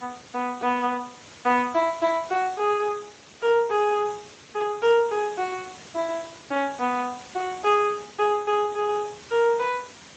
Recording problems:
lossy codec; MP3, then Speex, log-spectral distance 8 dB
hiss; slope -2 dB per octave, SNR 20 dB

